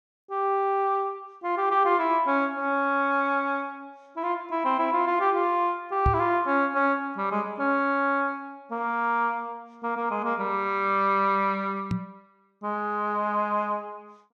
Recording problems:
knock on the microphone; at 6 s and at 12 s; peak +4 dB vs average level

